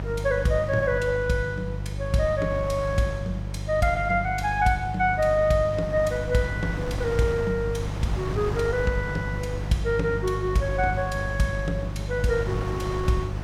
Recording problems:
hum; 50 Hz, harmonics up to 500 Hz, SNR 7 dB
wind noise; below 810 Hz, SNR 12 dB

